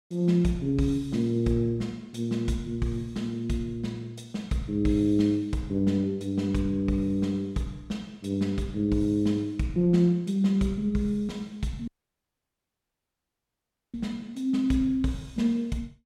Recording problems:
dropout; at 12 s for 2 s

